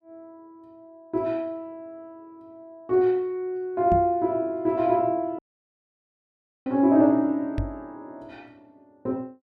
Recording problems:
knock on the microphone; at 4 s and at 7.5 s; peak -1 dB vs average level
audio cutting out; at 5.5 s for 1.5 s

